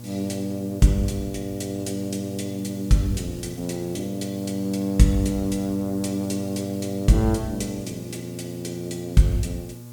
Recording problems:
electrical hum; 60 Hz, harmonics up to 840 Hz, SNR 13 dB
background hiss; SNR 22 dB

